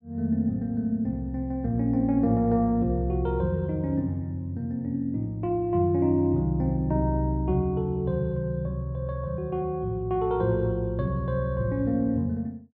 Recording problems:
none

